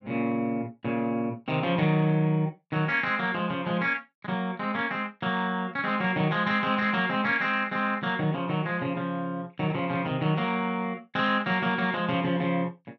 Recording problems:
none

